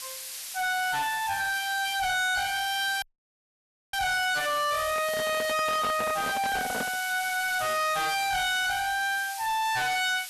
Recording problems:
distorted audio; hard clipping, uneven, signal-to-distortion ratio 6 dB
background hiss; SNR 10 dB
dropout; at 3 s for 1 s
handling noise; from 5 to 7 s; peak -3 dB vs average level

